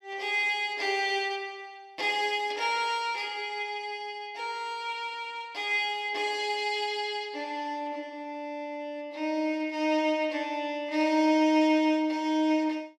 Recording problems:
none

